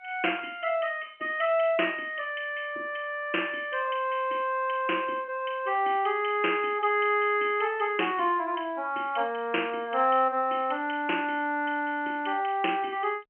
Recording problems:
telephone audio; 260 Hz to 3.1 kHz, G.711

